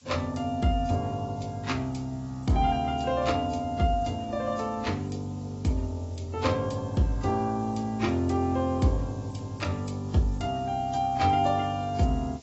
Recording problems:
codec artefacts; AAC, log-spectral distance 6 dB, nothing above 7.8 kHz
hiss; slope +2 dB per octave, SNR 27 dB

